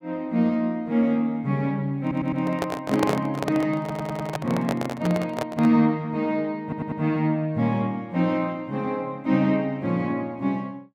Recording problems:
audio stuttering; at 2 s, at 4 s and at 6.5 s
microphone handling noise; from 2 to 6 s; peak +4 dB vs average level

